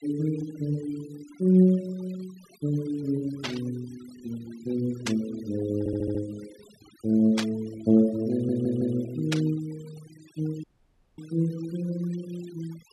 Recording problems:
denoising artefacts; signal-to-artefact ratio 21 dB
static burst; 4 times, first at 3.5 s; peak +2 dB vs average level
stutter; at 6 s and at 8.5 s
dropout; at 11 s for 0.5 s

